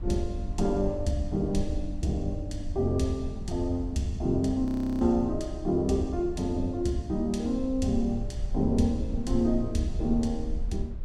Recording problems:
rumble; below 52 Hz, SNR 10 dB
wind noise; below 140 Hz, SNR 16 dB
audio freezing; at 4.5 s

